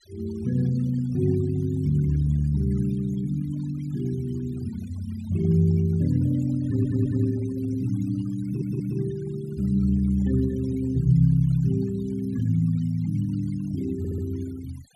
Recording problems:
noise reduction artefacts; signal-to-artefact ratio 22 dB
audio stuttering; at 6.5 s, at 8.5 s and at 14 s

